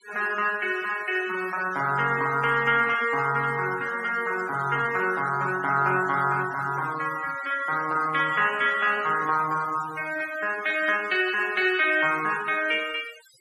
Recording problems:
noise reduction artefacts; signal-to-artefact ratio 16 dB

